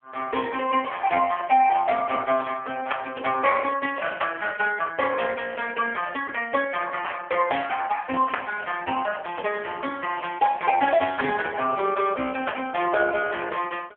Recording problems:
phone line; 300 Hz to 2.7 kHz, AMR-NB

